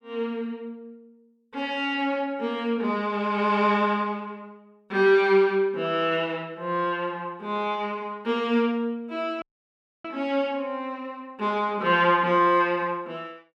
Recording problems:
audio cutting out; at 9.5 s for 0.5 s

